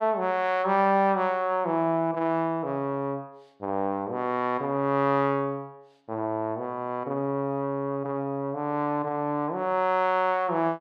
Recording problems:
none

